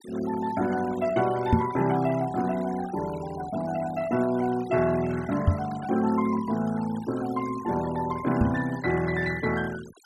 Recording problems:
noise reduction artefacts; signal-to-artefact ratio 17 dB
knock on the microphone; at 1.5 s, at 5.5 s and at 8.5 s; peak +9 dB vs average level

